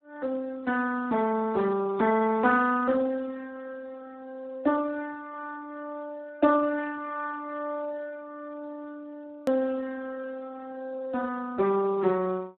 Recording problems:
telephone audio; 190 Hz to 2 kHz, Speex
hard cut with a click; at 9.5 s

